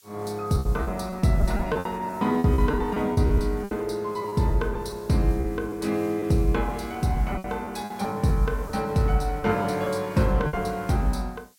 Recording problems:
hiss; slope +4 dB per octave, SNR 26 dB
packet loss; 9% of the sound replaced, filled with repeated pitch periods

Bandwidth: 16.5 kHz